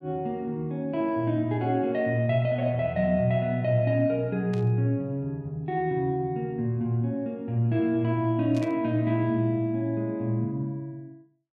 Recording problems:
burst of static; at 4.5 s and at 8.5 s; peak -14 dB vs average level

